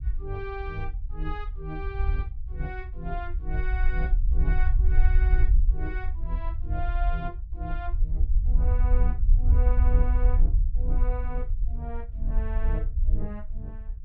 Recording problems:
rumble; below 54 Hz, SNR -10 dB

